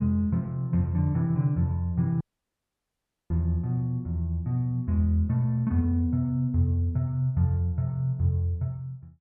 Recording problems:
audio cutting out; at 2 s for 1 s

